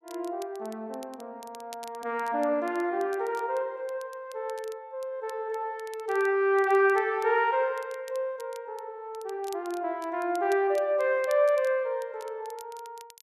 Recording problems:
crackle; vinyl, SNR 24 dB

